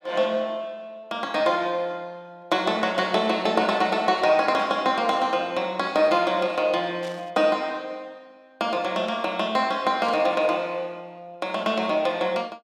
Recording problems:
static burst; at 4.5 s, at 7 s and at 10 s; peak -12 dB vs average level

